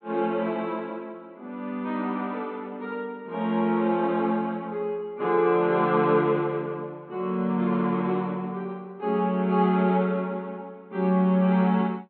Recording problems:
low-pass filter; nothing above 4.3 kHz

